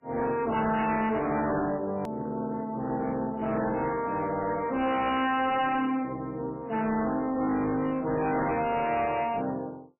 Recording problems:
lossy codec; MP3, then AAC, log-spectral distance 3 dB, nothing above 2.7 kHz
distorted audio; hard clipping, signal-to-distortion ratio 7 dB
edit click; at 2 s

